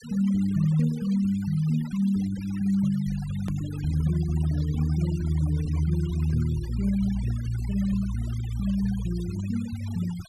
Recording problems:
denoising artefacts; signal-to-artefact ratio 19 dB
edit click; at 3.5 s

